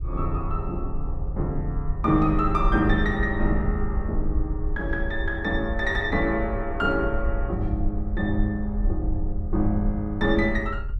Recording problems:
rumble; below 64 Hz, SNR 4 dB

